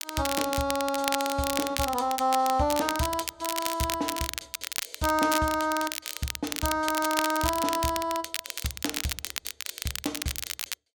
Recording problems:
crackle; vinyl, SNR 4 dB

